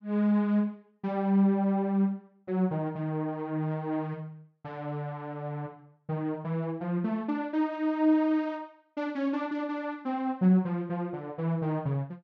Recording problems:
none

